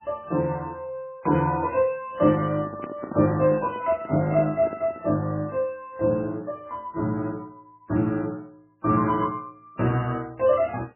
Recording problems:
lossy compression; MP3, log-spectral distance 2 dB, nothing above 2.7 kHz
microphone handling noise; from 2.5 to 5 s; peak -4 dB vs average level

